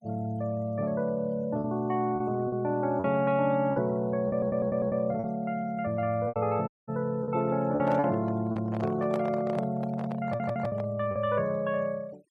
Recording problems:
denoising artefacts; signal-to-artefact ratio 27 dB
lost packets; 5% of the sound replaced, filled with repeated pitch periods
stutter; at 4 s and at 10 s
audio cutting out; at 6.5 s
handling noise; from 7.5 to 11 s; peak -3 dB vs average level

